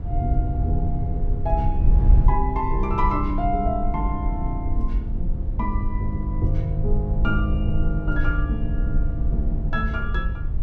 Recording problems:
wind noise; below 64 Hz, SNR -2 dB

